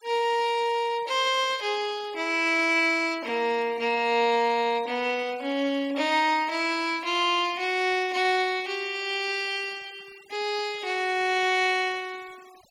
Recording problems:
denoising artefacts; signal-to-artefact ratio 23 dB

